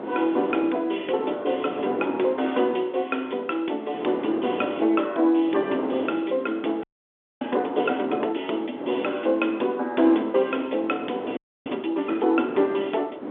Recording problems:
telephone audio; 240 Hz to 3.6 kHz, G.711
wind noise; below 580 Hz, SNR 9 dB
frozen audio; at 7 s for 0.5 s and at 11 s

